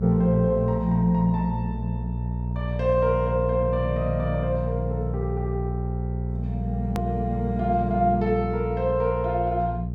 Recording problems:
hum; 60 Hz, harmonics up to 480 Hz, SNR 4 dB
hard cut with a click; at 7 s

